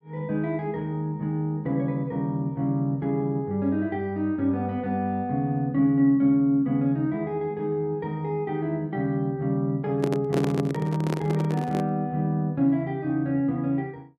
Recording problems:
microphone handling noise; from 10 to 12 s; peak +1 dB vs average level

